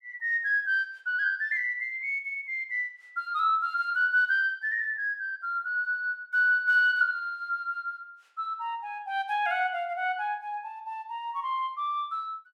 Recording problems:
none

